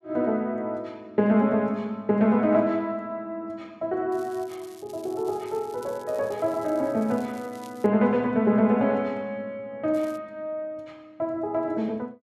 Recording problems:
crackle; from 4 to 8 s and at 10 s; loose cable, SNR 26 dB

